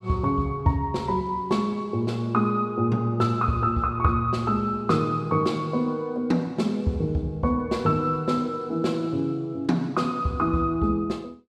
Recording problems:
none

